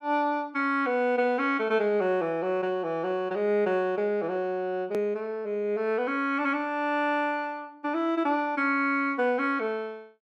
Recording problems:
click at an edit; at 5 s

